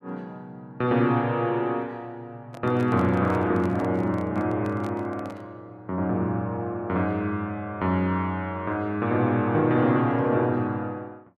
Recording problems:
microphone handling noise; from 2.5 to 5.5 s; peak -10 dB vs average level

